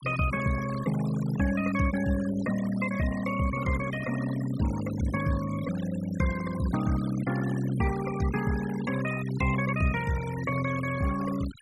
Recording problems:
denoising artefacts; signal-to-artefact ratio 13 dB

